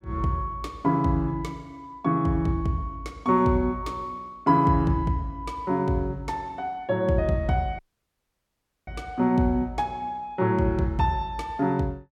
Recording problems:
audio cutting out; at 8 s for 1 s

